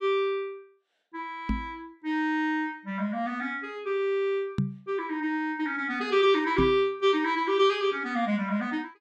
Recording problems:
microphone bump; at 1.5 s, at 4.5 s and at 6.5 s; peak +4 dB vs average level

